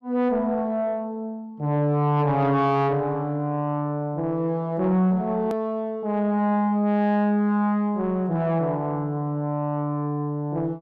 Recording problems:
distortion; soft clipping, signal-to-distortion ratio 11 dB
click at an edit; at 5.5 s

